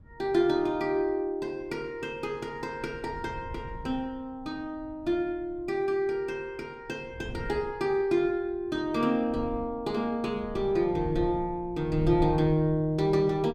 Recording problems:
wind on the microphone; below 110 Hz, SNR 14 dB

